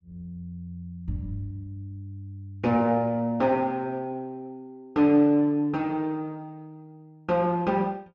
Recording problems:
none

